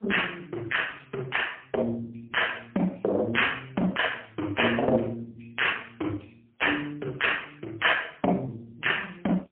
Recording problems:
phone line; 260 Hz to 3.2 kHz, AMR-NB, then MP3

